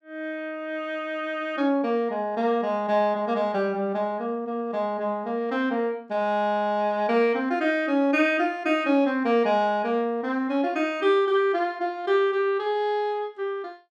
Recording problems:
none

